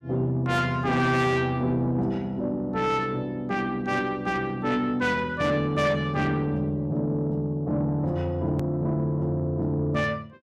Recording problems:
distortion; soft clipping, signal-to-distortion ratio 12 dB
edit click; at 8.5 s

